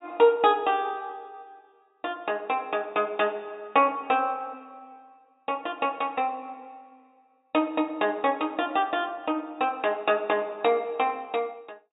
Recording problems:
low-pass filter; nothing above 4 kHz

